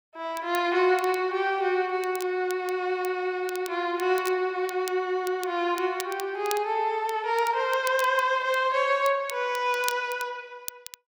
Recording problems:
crackle; vinyl, SNR 16 dB

